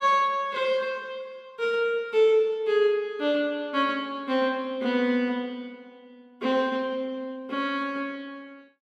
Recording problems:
none

